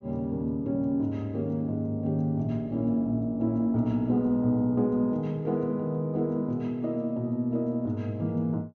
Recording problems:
treble missing; nothing above 7 kHz

